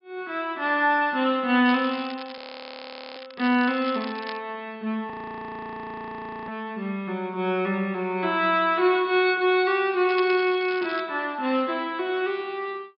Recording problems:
treble cut off; nothing above 5.5 kHz
crackle; from 1.5 to 4.5 s and at 10 s; loose cable, SNR 17 dB
frozen audio; at 2.5 s for 1 s and at 5 s for 1.5 s

